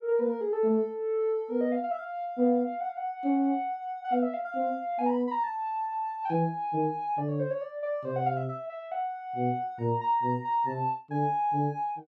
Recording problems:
none

